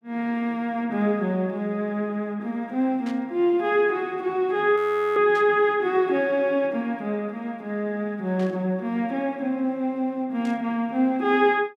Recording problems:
static burst; 4 times, first at 3 s; peak -14 dB vs average level
audio freezing; at 5 s

